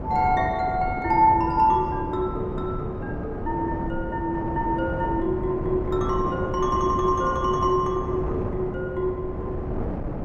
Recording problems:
wind noise; below 420 Hz, SNR 6 dB

